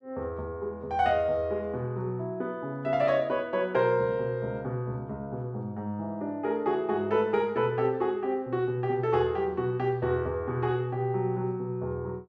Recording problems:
none

